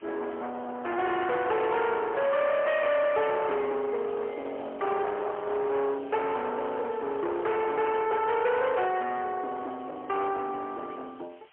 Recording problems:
telephone audio; 370 Hz to 3.6 kHz, AMR-NB, then MP3
distorted audio; soft clipping, signal-to-distortion ratio 9 dB
hiss; SNR 27 dB

